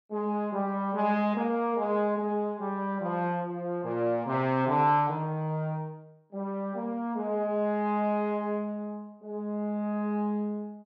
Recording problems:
none

